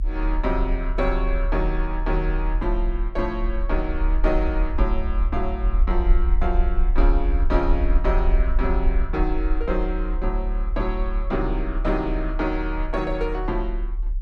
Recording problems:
low-frequency rumble; below 46 Hz, strongest tone 36 Hz, SNR -2 dB

